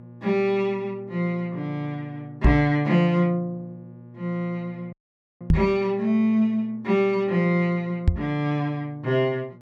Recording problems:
hum; 60 Hz, harmonics up to 840 Hz, SNR 21 dB
microphone bump; at 2.5 s, at 5.5 s and at 8 s; peak +9 dB vs average level
audio cutting out; at 5 s

